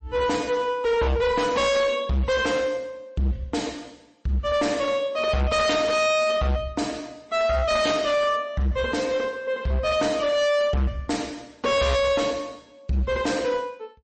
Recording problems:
codec artefacts; MP3, log-spectral distance 2 dB, nothing above 8.2 kHz
distorted audio; hard clipping, signal-to-distortion ratio 7 dB

